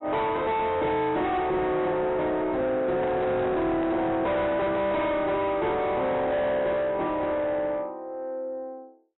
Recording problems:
low-pass filter; nothing above 3.9 kHz
distortion; soft clipping, signal-to-distortion ratio 7 dB
handling noise; from 3 to 5 s; peak 0 dB vs average level

